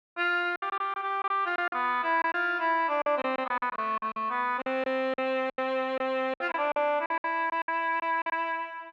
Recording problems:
packet loss; 13% of the sound replaced, filled with silence

